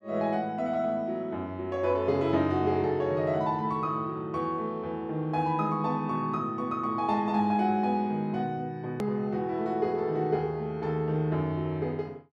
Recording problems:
click at an edit; at 9 s

